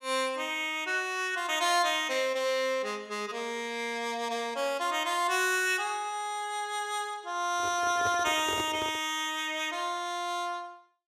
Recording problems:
handling noise; from 7.5 to 9 s; peak -4 dB vs average level

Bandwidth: 15.5 kHz